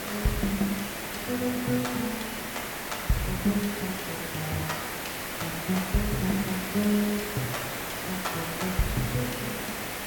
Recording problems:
hum; 60 Hz, harmonics up to 1.6 kHz, SNR 28 dB
background hiss; SNR 2 dB

